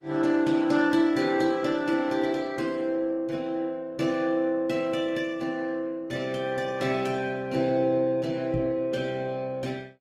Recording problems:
codec artefacts; Vorbis, then Opus, log-spectral distance 2 dB
microphone bump; at 8.5 s; peak -2 dB vs average level

